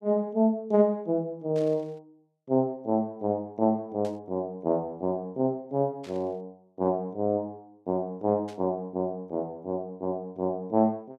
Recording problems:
burst of static; 4 times, first at 1.5 s; peak -15 dB vs average level

